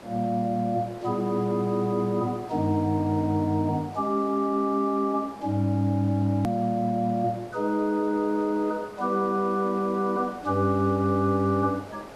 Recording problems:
background hiss; SNR 19 dB
edit click; at 6.5 s

